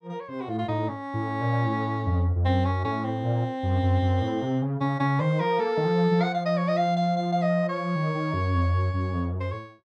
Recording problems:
none

